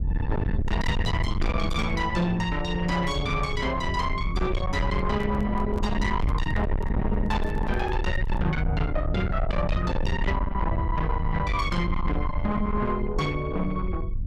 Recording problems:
distortion; soft clipping, signal-to-distortion ratio 6 dB
low-frequency rumble; below 110 Hz, SNR 2 dB
handling noise; from 5 to 8.5 s; peak -6 dB vs average level

